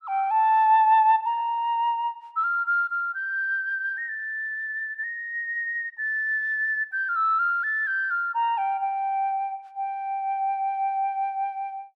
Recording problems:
none

